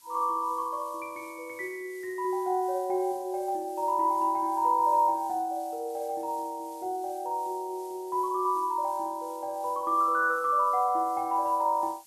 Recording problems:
background hiss; slope +2 dB per octave, SNR 23 dB

